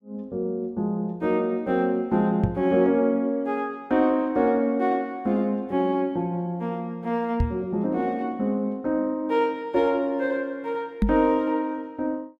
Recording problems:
microphone bump; at 2.5 s, at 7.5 s and at 11 s; peak +6 dB vs average level

